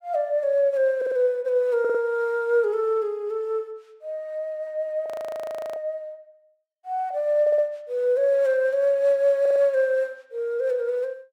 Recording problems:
audio stuttering; 4 times, first at 1 s
audio freezing; at 5 s for 0.5 s

